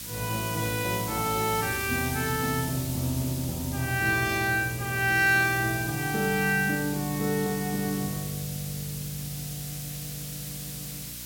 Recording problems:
hum; 60 Hz, harmonics up to 900 Hz, SNR 19 dB
background hiss; slope +5 dB per octave, SNR 8 dB

